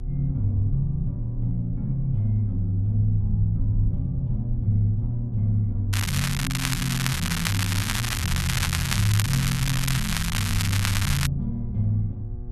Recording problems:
electrical hum; 60 Hz, harmonics up to 840 Hz, SNR 19 dB
rumble; below 76 Hz, SNR 9 dB
crackle; from 6 to 11 s; loose cable, SNR 2 dB

